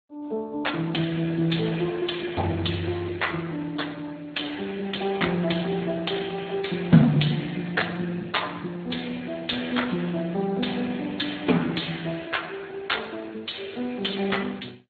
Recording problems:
codec artefacts; MP2, then Speex, log-spectral distance 8 dB, nothing above 4.2 kHz

